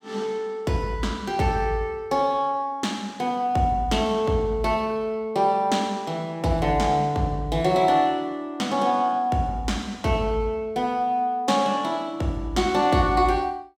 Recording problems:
none

